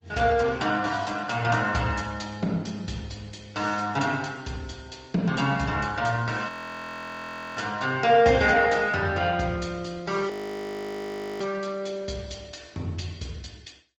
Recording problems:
lossy compression; Speex, then Opus, log-spectral distance 5 dB, nothing above 20.1 kHz
audio freezing; at 6.5 s for 1 s and at 10 s for 1 s

